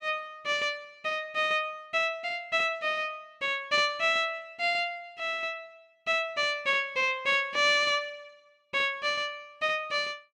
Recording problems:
none

